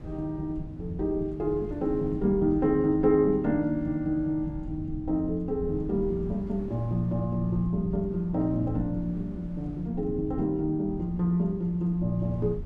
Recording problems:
low-frequency rumble; below 140 Hz, SNR 13 dB
wind on the microphone; below 270 Hz, SNR 21 dB

